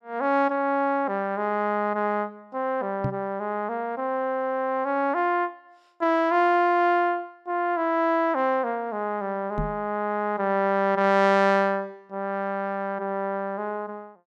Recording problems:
knock on the microphone; at 3 s and at 9.5 s; peak +1 dB vs average level

